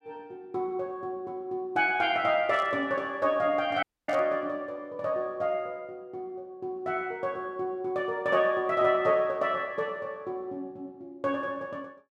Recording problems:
burst of static; at 2.5 s and at 4 s; peak -14 dB vs average level
audio cutting out; at 4 s

